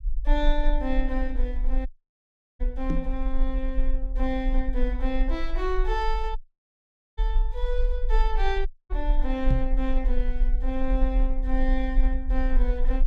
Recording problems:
low-frequency rumble; below 40 Hz, strongest tone 26 Hz, SNR -3 dB
audio cutting out; at 2 s for 0.5 s, at 6.5 s for 1 s and at 8.5 s
microphone bump; at 3 s and at 9.5 s; peak +8 dB vs average level

